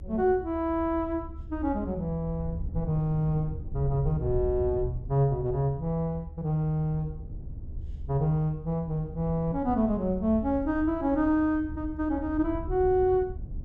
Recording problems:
low-frequency rumble; below 88 Hz, SNR 11 dB

